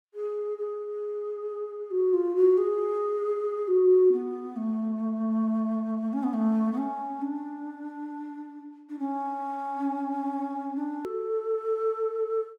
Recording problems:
edit click; at 11 s

